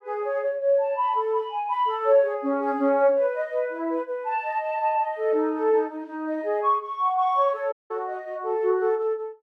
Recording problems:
audio cutting out; at 7.5 s

